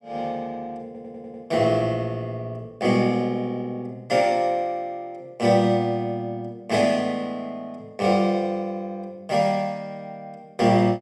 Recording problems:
audio stuttering; at 1 s

